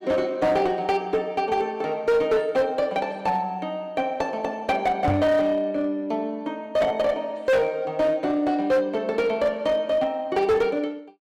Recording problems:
distorted audio; hard clipping, uneven, signal-to-distortion ratio 11 dB
microphone bump; at 5 s; peak +3 dB vs average level

